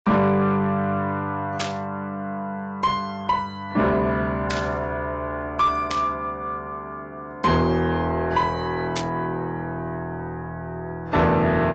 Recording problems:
lossy compression; AAC, log-spectral distance 2 dB, nothing above 7.6 kHz
distortion; soft clipping, signal-to-distortion ratio 12 dB
static burst; 4 times, first at 1.5 s; peak +1 dB vs average level

